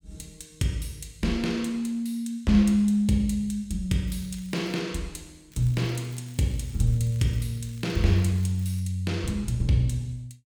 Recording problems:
crackling; at 4 s and from 5.5 to 9 s; loose cable, SNR 26 dB

